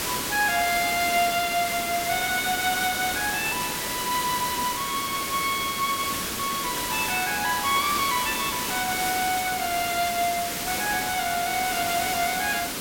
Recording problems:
background hiss; slope -2 dB per octave, SNR 2 dB

